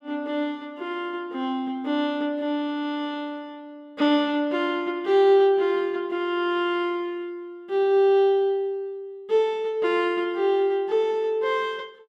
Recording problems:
none

